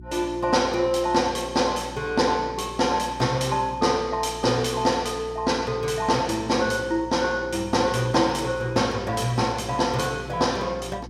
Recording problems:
electrical hum; 60 Hz, harmonics up to 360 Hz, SNR 18 dB

